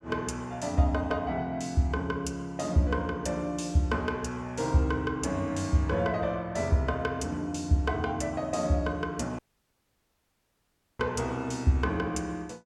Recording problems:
dropout; at 9.5 s for 1.5 s

